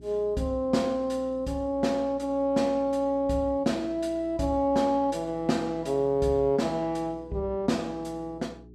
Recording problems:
hum; 60 Hz, harmonics up to 420 Hz, SNR 22 dB

